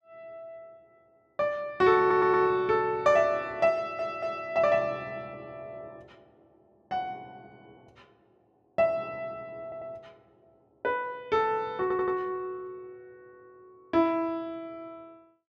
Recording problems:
audio stuttering; 4 times, first at 2 s

